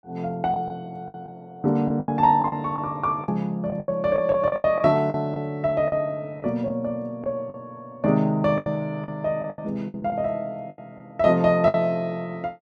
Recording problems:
lost packets; 10% of the sound replaced, filled with the last packet

